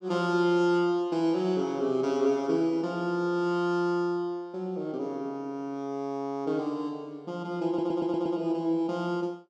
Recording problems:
stutter; at 7.5 s

